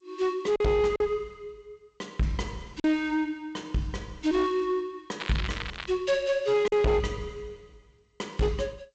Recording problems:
lossy codec; G.722, log-spectral distance 3 dB, nothing above 7.6 kHz
distorted audio; hard clipping, uneven, signal-to-distortion ratio 10 dB
lost packets; 2% of the sound replaced, filled with silence
crackling; at 5 s; loose cable, SNR 9 dB

